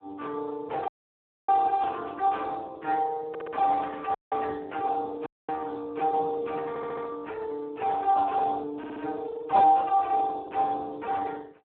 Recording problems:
phone line; 300 Hz to 3.5 kHz, Speex
audio cutting out; at 1 s for 0.5 s, at 4 s and at 5.5 s
audio stuttering; at 3.5 s, at 6.5 s and at 9 s

